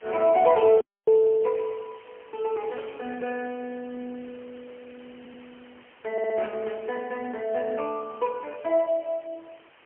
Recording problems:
telephone audio; 220 Hz to 3.1 kHz, AMR-NB, then MP3
background hiss; SNR 27 dB
audio cutting out; at 1 s
stutter; at 5 s and at 6 s

